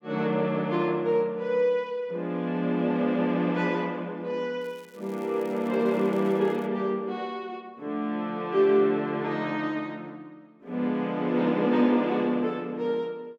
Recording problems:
crackle; from 4.5 to 6.5 s; loose cable, SNR 29 dB

